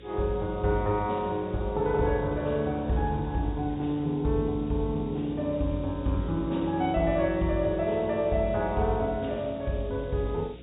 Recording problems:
low-pass filter; nothing above 4 kHz
hum; 60 Hz, harmonics up to 540 Hz, SNR 19 dB
background hiss; SNR 27 dB

